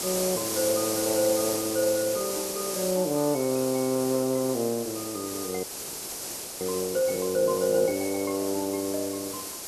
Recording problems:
hiss; SNR 5 dB
frozen audio; at 5.5 s for 1 s

